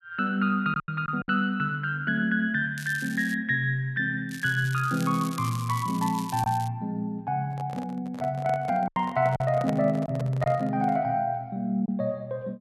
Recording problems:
packet loss; 3% of the sound replaced, filled with silence
crackle; at 3 s and from 4.5 to 6.5 s; loose cable, SNR 16 dB
microphone handling noise; from 7.5 to 11 s; peak -2 dB vs average level

